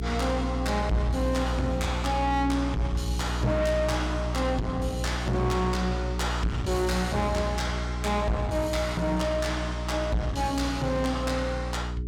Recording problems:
distorted audio; soft clipping, signal-to-distortion ratio 7 dB
mains hum; 60 Hz, harmonics up to 420 Hz, SNR 3 dB

